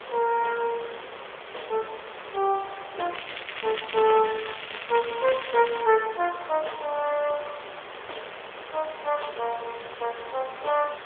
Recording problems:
telephone audio; 340 Hz to 3 kHz, AMR-NB
background hiss; SNR 12 dB
crackling; from 3 to 6 s; loose cable, SNR 8 dB

